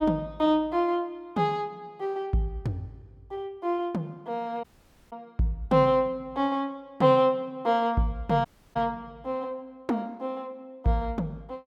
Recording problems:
dropout; at 4.5 s and at 8.5 s

